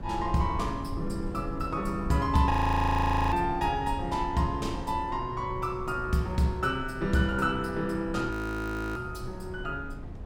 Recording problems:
wind on the microphone; below 150 Hz, SNR 10 dB
audio freezing; at 2.5 s for 1 s and at 8.5 s for 0.5 s

